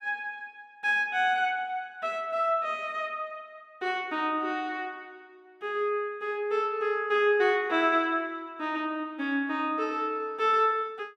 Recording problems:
none

